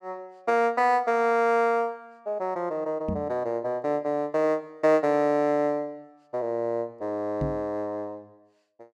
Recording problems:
microphone bump; at 3 s and at 7.5 s; peak 0 dB vs average level

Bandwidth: 12.5 kHz